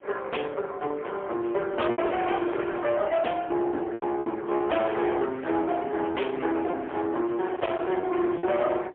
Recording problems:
phone line; 260 Hz to 3.4 kHz, AMR-NB, then MP3
distorted audio; hard clipping, uneven, signal-to-distortion ratio 7 dB
wind on the microphone; below 1.1 kHz, SNR 15 dB
lost packets; 5% of the sound replaced, filled with repeated pitch periods

